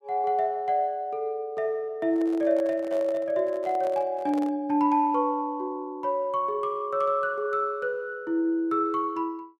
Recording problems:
handling noise; from 2 to 4.5 s; peak -8 dB vs average level

